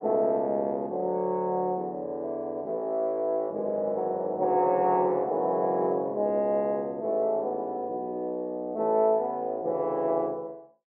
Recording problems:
none

